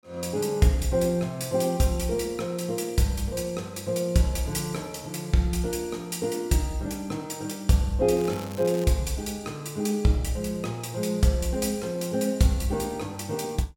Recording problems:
crackling; at 8 s; loose cable, SNR 18 dB

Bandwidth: 17 kHz